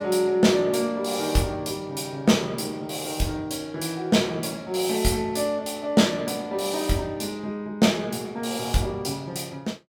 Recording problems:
none

